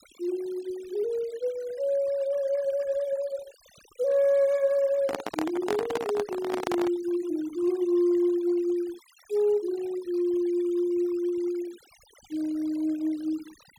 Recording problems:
noise reduction artefacts; signal-to-artefact ratio 22 dB
microphone handling noise; from 5 to 7 s; peak +1 dB vs average level

